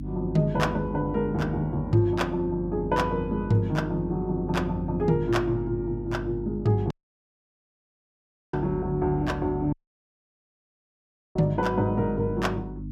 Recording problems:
hum; 50 Hz, harmonics up to 300 Hz, SNR 9 dB
audio cutting out; at 7 s for 1.5 s and at 9.5 s for 1.5 s

